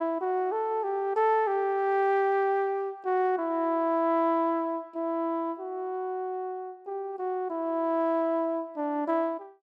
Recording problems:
none

